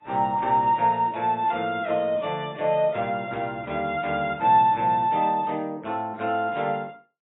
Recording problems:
lossy codec; AAC, log-spectral distance 2 dB, nothing above 3.6 kHz

